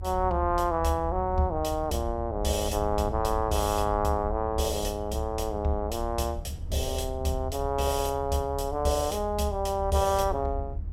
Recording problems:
low-frequency rumble; below 78 Hz, SNR 8 dB

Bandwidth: 16 kHz